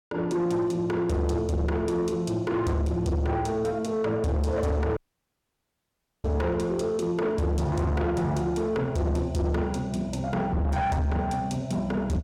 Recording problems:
distortion; soft clipping, signal-to-distortion ratio 8 dB
audio cutting out; at 5 s for 1.5 s

